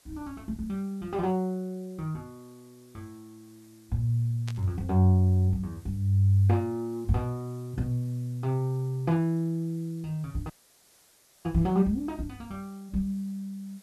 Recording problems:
background hiss; slope -1 dB per octave, SNR 30 dB
static burst; at 4.5 s; peak -9 dB vs average level
audio cutting out; at 11 s for 1 s

